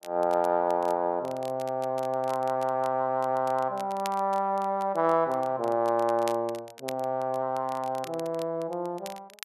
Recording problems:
crackle; vinyl, SNR 21 dB

